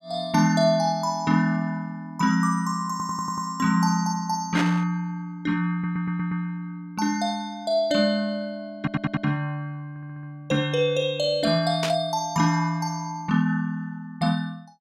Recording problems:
audio stuttering; 4 times, first at 3 s
burst of static; at 4.5 s and at 12 s; peak +2 dB vs average level

